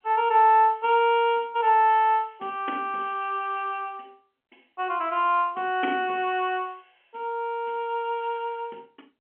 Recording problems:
telephone audio; 240 Hz to 3.5 kHz, G.711

